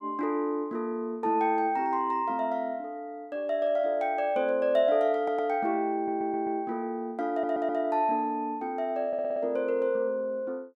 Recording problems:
audio stuttering; 4 times, first at 5 s

